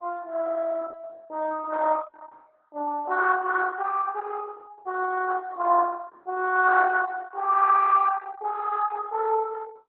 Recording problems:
codec artefacts; Opus, log-spectral distance 4 dB

